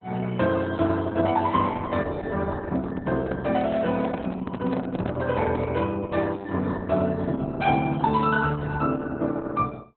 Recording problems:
lossy compression; Opus, log-spectral distance 3 dB, nothing above 3.6 kHz
microphone handling noise; from 2.5 to 6 s; peak -3 dB vs average level

